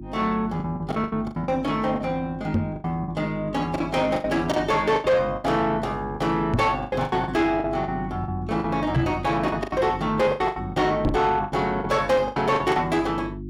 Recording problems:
distortion; soft clipping, signal-to-distortion ratio 11 dB
hum; 50 Hz, harmonics up to 350 Hz, SNR 12 dB
packet loss; 14% of the sound replaced, filled with the last packet
microphone bump; 4 times, first at 2.5 s; peak +5 dB vs average level

